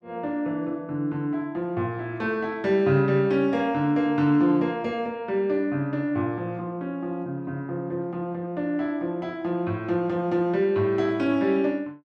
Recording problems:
none

